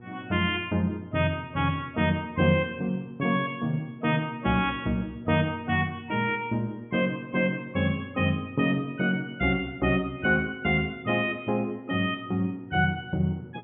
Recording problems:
treble cut off; nothing above 3.4 kHz
hum; 60 Hz, harmonics up to 960 Hz, SNR 23 dB

